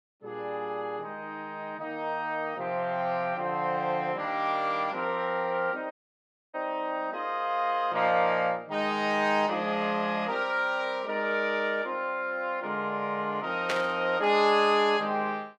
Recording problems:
audio cutting out; at 6 s for 0.5 s
burst of static; at 14 s; peak +2 dB vs average level

